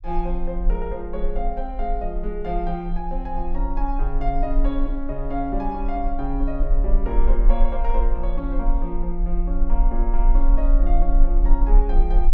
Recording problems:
rumble; below 36 Hz, strongest tone 26 Hz, SNR -4 dB

